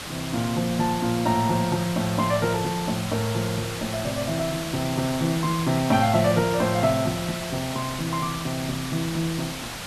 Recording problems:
hiss; slope -1 dB per octave, SNR 7 dB

